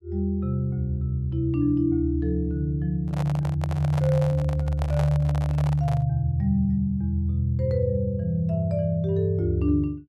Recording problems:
handling noise; from 3 to 6 s; peak -5 dB vs average level

